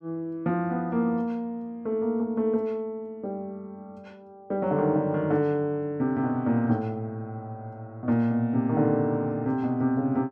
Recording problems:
none

